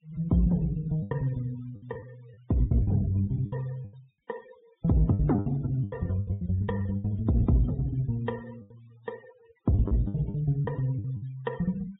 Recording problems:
treble cut off; nothing above 4 kHz
noise reduction artefacts; signal-to-artefact ratio 24 dB
lost packets; 12% of the sound replaced, filled with the last packet

